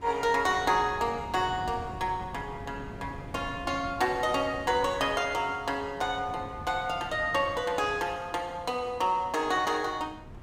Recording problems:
wind noise; below 320 Hz, SNR 16 dB

